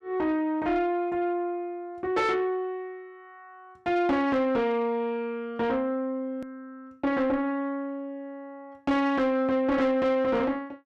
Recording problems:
distortion; soft clipping, signal-to-distortion ratio 12 dB
click at an edit; at 6.5 s

